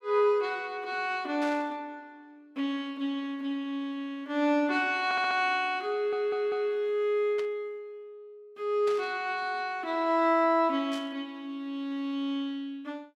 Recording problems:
burst of static; 4 times, first at 1.5 s; peak -10 dB vs average level
audio stuttering; at 5 s and at 6 s

